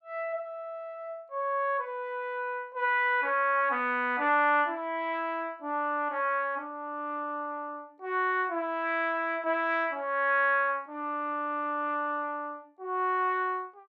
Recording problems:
none

